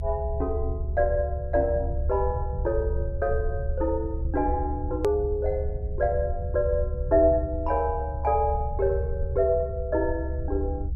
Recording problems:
low-frequency rumble; below 72 Hz, SNR 4 dB
edit click; at 5 s

